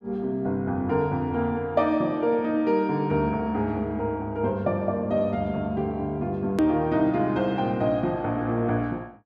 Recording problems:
hard cut with a click; at 6.5 s

